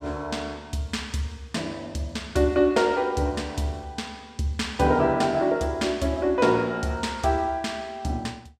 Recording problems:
none

